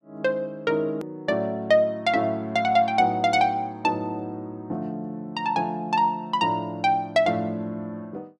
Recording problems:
edit click; at 1 s

